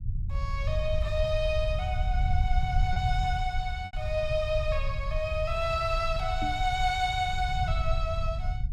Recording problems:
rumble; below 84 Hz, SNR 2 dB
packet loss; 1.4% of the sound replaced, filled with repeated pitch periods
microphone bump; at 6.5 s; peak -2 dB vs average level

